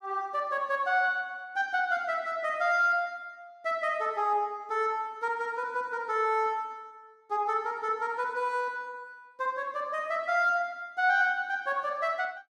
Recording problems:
none

